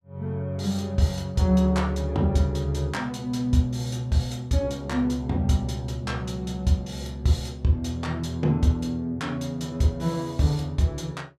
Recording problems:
none

